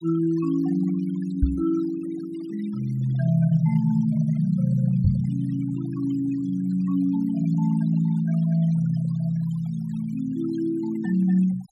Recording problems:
noise reduction artefacts; signal-to-artefact ratio 20 dB
microphone thump; at 1.5 s and at 5 s; peak +6 dB vs average level

